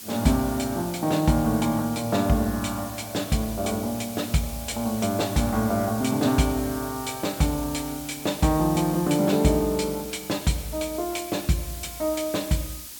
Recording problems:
hiss; SNR 12 dB

